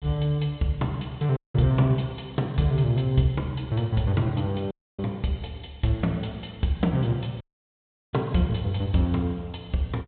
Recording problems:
treble cut off; nothing above 4 kHz
dropout; at 1.5 s, at 4.5 s and at 7.5 s for 0.5 s

